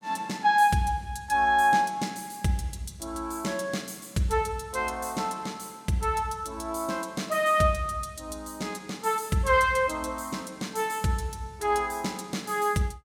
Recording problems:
none

